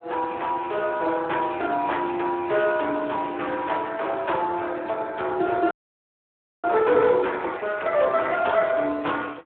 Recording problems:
telephone audio; 260 Hz to 3.6 kHz, Speex
frozen audio; at 5.5 s for 1 s

